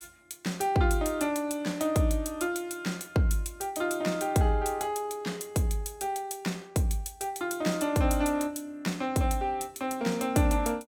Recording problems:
none

